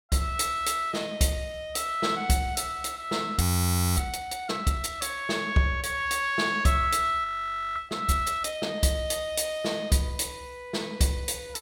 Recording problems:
audio freezing; at 3.5 s for 0.5 s and at 7 s for 0.5 s

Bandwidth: 17 kHz